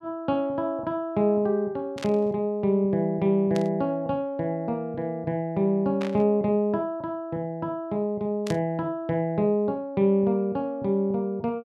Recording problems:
static burst; 4 times, first at 2 s; peak -6 dB vs average level

